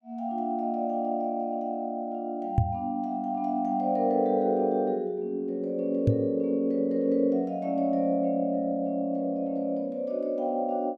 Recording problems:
knock on the microphone; at 2.5 s and at 6 s; peak +8 dB vs average level

